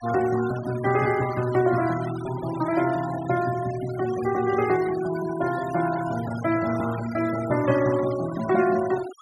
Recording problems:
denoising artefacts; signal-to-artefact ratio 14 dB

